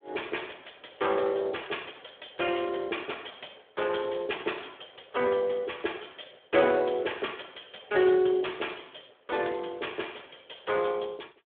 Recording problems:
telephone audio; 280 Hz to 3.5 kHz, Speex

